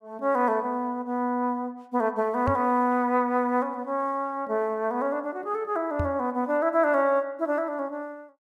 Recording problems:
microphone bump; at 2.5 s and at 6 s; peak +1 dB vs average level

